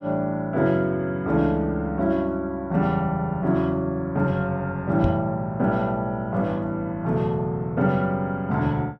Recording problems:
knock on the microphone; at 5 s; peak +2 dB vs average level

